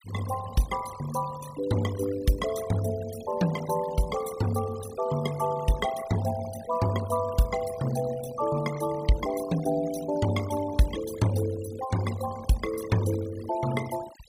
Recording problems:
denoising artefacts; signal-to-artefact ratio 14 dB

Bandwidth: 15.5 kHz